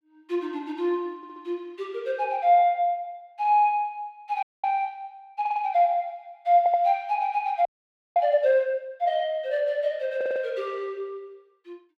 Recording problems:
audio stuttering; 4 times, first at 1 s
audio freezing; at 4.5 s and at 7.5 s for 0.5 s

